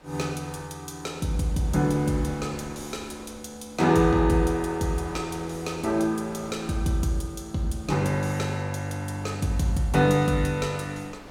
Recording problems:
wind on the microphone; below 1.3 kHz, SNR 21 dB

